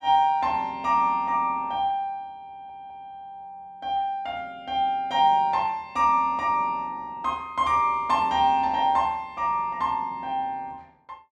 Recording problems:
stutter; at 2.5 s

